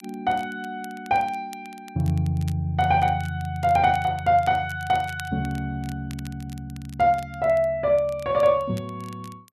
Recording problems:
crackle; vinyl, SNR 25 dB

